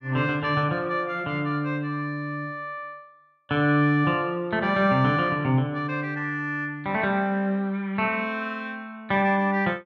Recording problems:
none

